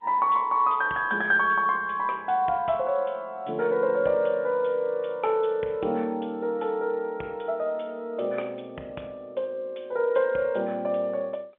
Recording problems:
telephone audio; 260 Hz to 3.5 kHz, G.711

